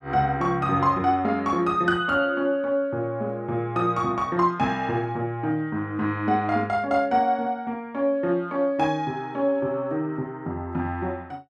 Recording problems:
none

